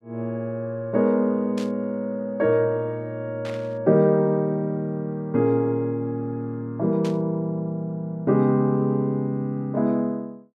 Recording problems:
burst of static; at 1.5 s, at 3.5 s and at 7 s; peak -11 dB vs average level

